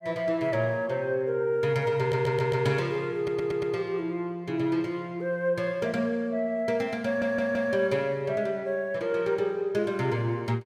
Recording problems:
stutter; at 2 s, at 3 s and at 7 s

